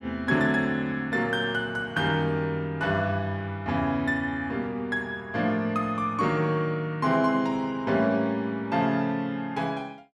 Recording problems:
none

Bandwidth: 14 kHz